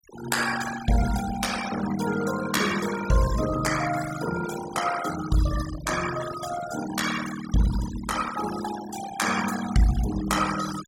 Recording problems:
noise reduction artefacts; signal-to-artefact ratio 8 dB

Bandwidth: 16 kHz